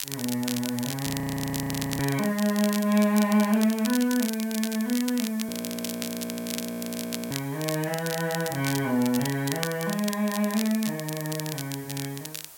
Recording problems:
background hiss; SNR 17 dB
crackle; vinyl, SNR 8 dB
frozen audio; at 1 s for 1 s and at 5.5 s for 2 s

